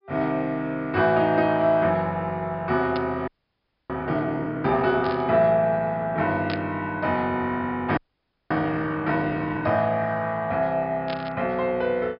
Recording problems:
treble cut off; nothing above 5.5 kHz
burst of static; 4 times, first at 3 s; peak -5 dB vs average level
audio freezing; at 3.5 s for 0.5 s and at 8 s for 0.5 s

